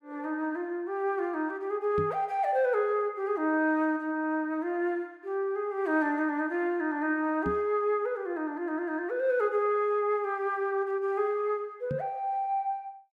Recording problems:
microphone bump; at 2 s, at 7.5 s and at 12 s; peak -1 dB vs average level

